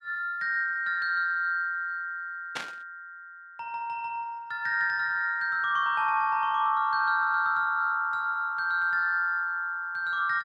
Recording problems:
burst of static; at 2.5 s; peak -2 dB vs average level

